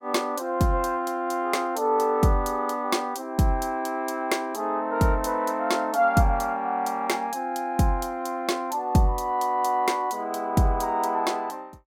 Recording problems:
none

